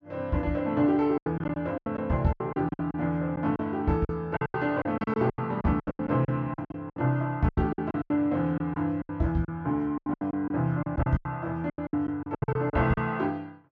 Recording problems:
treble cut off; nothing above 8 kHz
packet loss; 17% of the sound replaced, filled with silence

